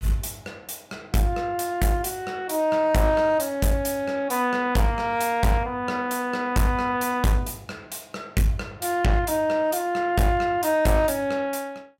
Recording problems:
distorted audio; hard clipping, uneven, signal-to-distortion ratio 9 dB

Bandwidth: 16 kHz